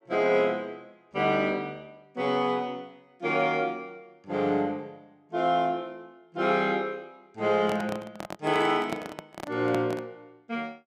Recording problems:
microphone handling noise; from 7.5 to 10 s; peak -2 dB vs average level

